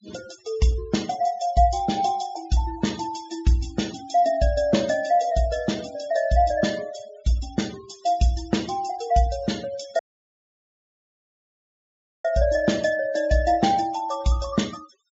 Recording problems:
treble cut off; nothing above 7.4 kHz
noise reduction artefacts; signal-to-artefact ratio 20 dB
dropout; at 10 s for 2.5 s

